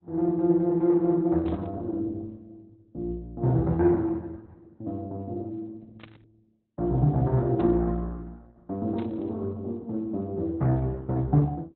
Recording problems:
lossy compression; Opus, log-spectral distance 2 dB
burst of static; 4 times, first at 1.5 s; peak -16 dB vs average level

